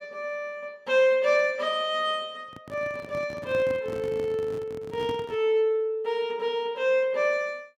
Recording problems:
handling noise; from 2.5 to 5.5 s; peak -7 dB vs average level

